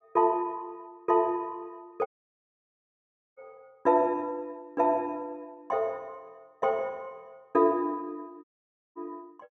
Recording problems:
audio cutting out; at 2 s for 1.5 s and at 8.5 s for 0.5 s

